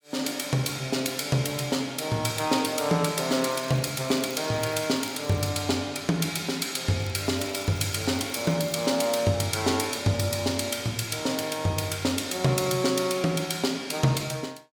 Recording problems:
crackling; from 3 to 5.5 s and from 7 to 9 s; loose cable, SNR 22 dB

